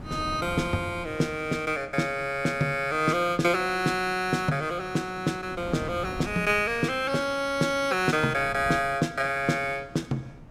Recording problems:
wind noise; below 340 Hz, SNR 17 dB

